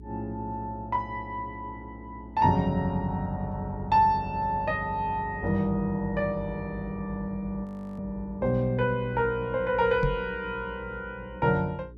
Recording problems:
hum; 60 Hz, harmonics up to 420 Hz, SNR 18 dB
audio freezing; at 7.5 s
knock on the microphone; at 10 s; peak +4 dB vs average level

